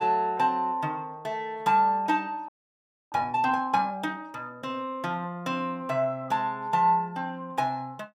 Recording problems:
frozen audio; at 2.5 s for 0.5 s

